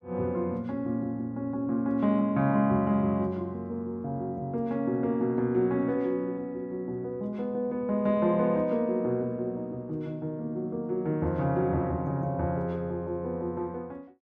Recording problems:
none

